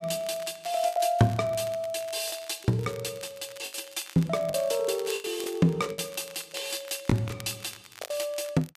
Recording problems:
crackling; vinyl, SNR 18 dB
lost packets; 6% of the sound replaced, filled with the last packet

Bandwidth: 14.5 kHz